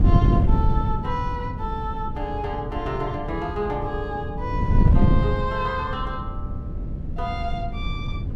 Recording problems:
wind on the microphone; below 140 Hz, SNR -3 dB

